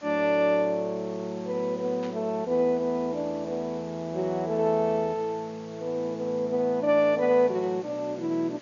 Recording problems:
low-pass filter; nothing above 6.9 kHz
background hiss; slope -2 dB per octave, SNR 24 dB
burst of static; at 2 s; peak -14 dB vs average level

